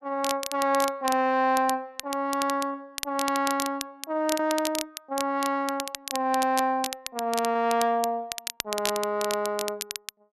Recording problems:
crackle; vinyl, SNR 8 dB
packet loss; 1.1% of the sound replaced, filled with repeated pitch periods

